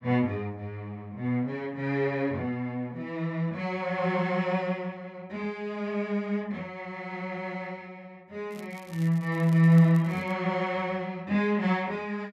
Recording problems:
crackle; from 8.5 to 10 s; loose cable, SNR 25 dB

